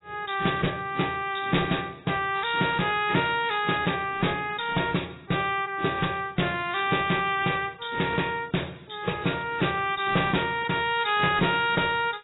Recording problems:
lossy compression; AAC, log-spectral distance 8 dB, nothing above 3.8 kHz
distorted audio; hard clipping, uneven, signal-to-distortion ratio 10 dB

